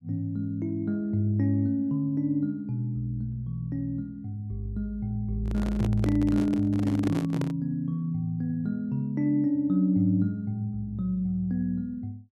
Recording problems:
handling noise; from 5.5 to 7.5 s; peak 0 dB vs average level

